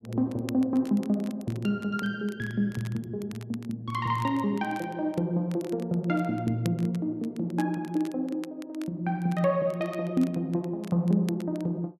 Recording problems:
crackling; vinyl, SNR 22 dB

